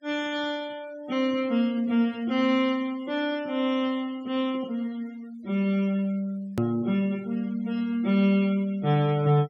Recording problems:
noise reduction artefacts; signal-to-artefact ratio 23 dB
hard cut with a click; at 6.5 s

